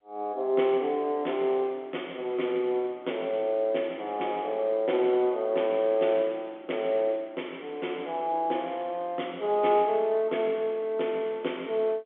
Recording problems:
phone line; 280 Hz to 3.5 kHz, G.711

